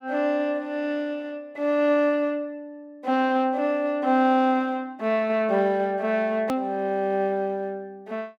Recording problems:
hard cut with a click; at 6.5 s

